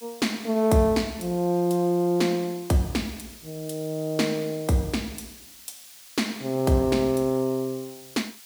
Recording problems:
hiss; slope +3 dB per octave, SNR 19 dB

